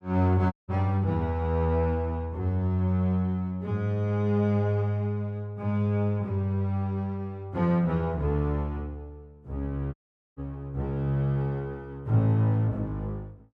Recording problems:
audio cutting out; at 0.5 s and at 10 s

